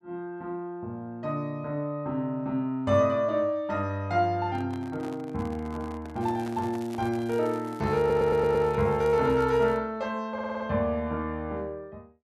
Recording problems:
microphone handling noise; from 4.5 to 8.5 s; peak -9 dB vs average level
crackle; from 6 to 10 s; loose cable, SNR 25 dB
audio stuttering; at 8 s and at 10 s

